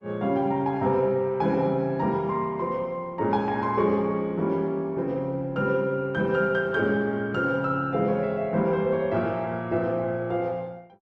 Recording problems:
codec artefacts; Opus, log-spectral distance 2 dB

